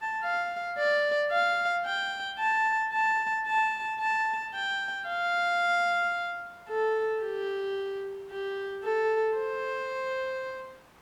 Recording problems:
background hiss; SNR 28 dB

